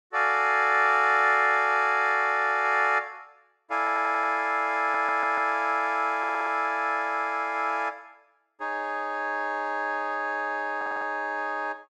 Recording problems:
stutter; 4 times, first at 4 s

